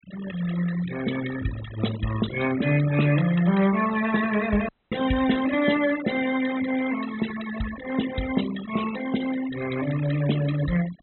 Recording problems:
treble cut off; nothing above 4 kHz
denoising artefacts; signal-to-artefact ratio 11 dB
dropout; at 4.5 s

